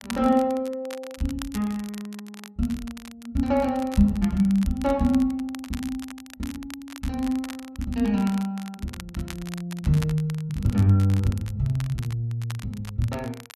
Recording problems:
crackle; vinyl, SNR 18 dB

